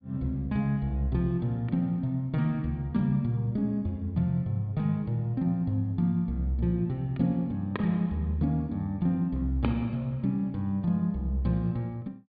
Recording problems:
treble cut off; nothing above 4.7 kHz

